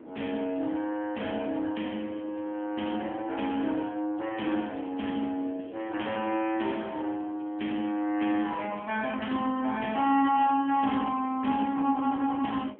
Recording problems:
phone line; 220 Hz to 3.3 kHz, AMR-NB
wind on the microphone; below 510 Hz, SNR 21 dB

